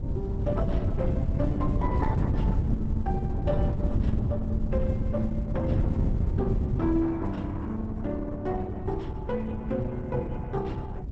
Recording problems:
lossy compression; Opus, log-spectral distance 2 dB, nothing above 7.8 kHz
wind on the microphone; below 150 Hz, SNR -2 dB

